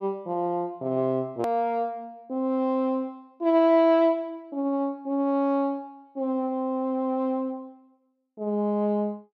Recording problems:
hard cut with a click; at 1.5 s

